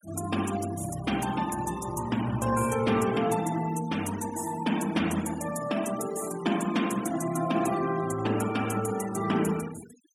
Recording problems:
noise reduction artefacts; signal-to-artefact ratio 14 dB

